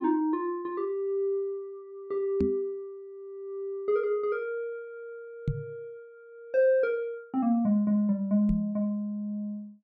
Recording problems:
microphone thump; at 2.5 s, at 5.5 s and at 8.5 s; peak +4 dB vs average level

